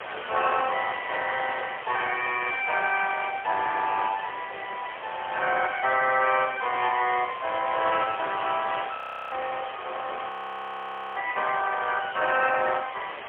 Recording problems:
telephone audio; 390 Hz to 3.3 kHz, AMR-NB, then MP3
background hiss; SNR 11 dB
audio freezing; at 9 s and at 10 s for 1 s

